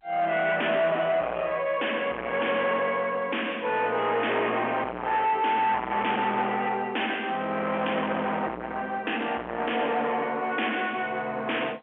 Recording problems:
phone line; 280 Hz to 3.2 kHz, G.711
distorted audio; soft clipping, signal-to-distortion ratio 6 dB

